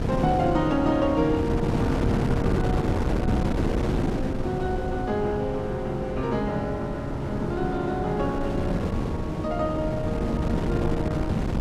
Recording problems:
wind on the microphone; below 350 Hz, SNR 1 dB

